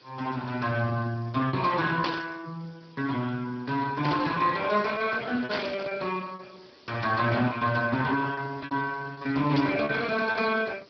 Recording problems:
low-pass filter; nothing above 5 kHz
lossy codec; Speex, log-spectral distance 10 dB
hiss; SNR 27 dB
lost packets; 9% of the sound replaced, filled with repeated pitch periods
burst of static; 4 times, first at 2 s; peak +1 dB vs average level

